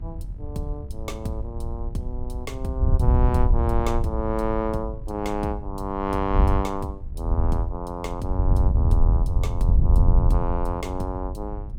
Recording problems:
hum; 50 Hz, harmonics up to 1.4 kHz, SNR 24 dB
wind on the microphone; below 82 Hz, SNR -4 dB

